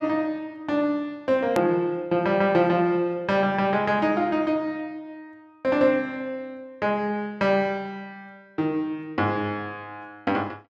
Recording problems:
click at an edit; at 1.5 s

